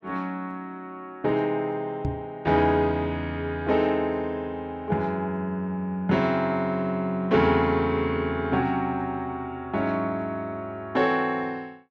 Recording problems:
microphone bump; at 2 s; peak +1 dB vs average level

